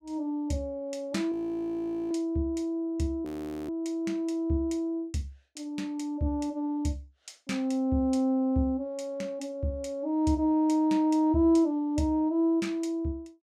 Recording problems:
frozen audio; at 1.5 s for 1 s and at 3.5 s

